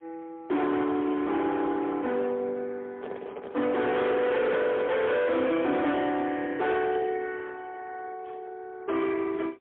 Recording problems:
phone line; 220 Hz to 3.6 kHz, AMR-NB, then MP3
distortion; hard clipping, signal-to-distortion ratio 8 dB
handling noise; from 3 to 5 s; peak -4 dB vs average level

